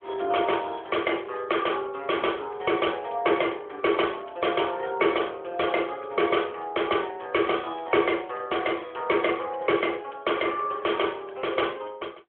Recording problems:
telephone audio; 300 Hz to 3.3 kHz, AMR-NB

